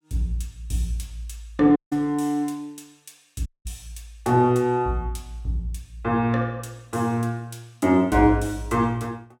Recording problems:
audio cutting out; at 2 s and at 3.5 s

